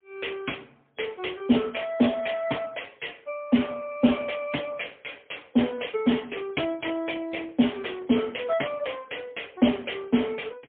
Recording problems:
phone line; 130 Hz to 3.4 kHz, AMR-NB, then MP3

